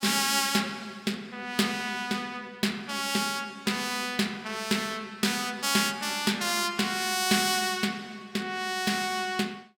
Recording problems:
none

